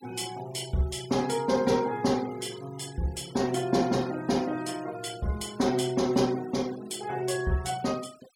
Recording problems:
denoising artefacts; signal-to-artefact ratio 19 dB

